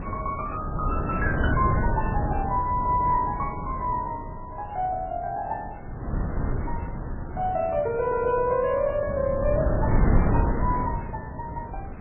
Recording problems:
codec artefacts; MP3, log-spectral distance 2 dB, nothing above 2.5 kHz
wind noise; below 230 Hz, SNR 2 dB

